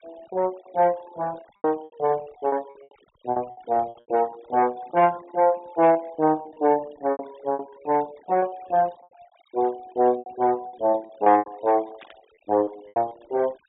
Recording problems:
treble missing; nothing above 4 kHz
noise reduction artefacts; signal-to-artefact ratio 24 dB
packet loss; 11% of the sound replaced, filled with repeated pitch periods
burst of static; at 12 s; peak -17 dB vs average level

